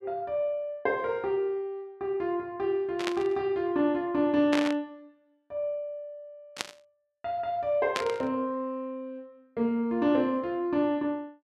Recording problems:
burst of static; 4 times, first at 3 s; peak +2 dB vs average level

